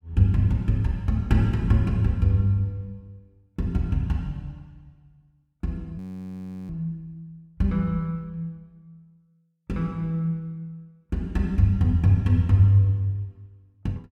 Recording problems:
audio freezing; at 6 s for 0.5 s

